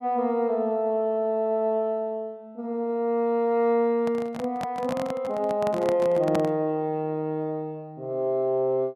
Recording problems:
microphone handling noise; from 4 to 6.5 s; peak +1 dB vs average level

